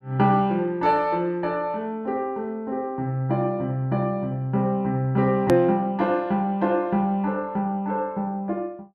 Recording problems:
hard cut with a click; at 5.5 s

